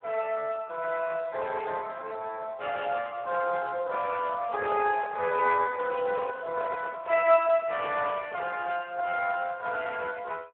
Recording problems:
telephone audio; 320 Hz to 2.8 kHz, Speex
handling noise; from 4.5 to 8.5 s; peak -5 dB vs average level

